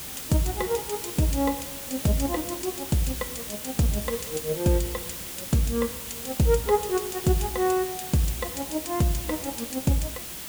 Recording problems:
hiss; slope -1 dB per octave, SNR 7 dB
crackle; from 5.5 to 8.5 s; loose cable, SNR 29 dB

